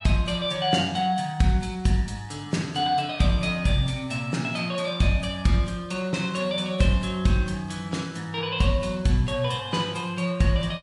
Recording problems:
lossy codec; MP3, log-spectral distance 2 dB

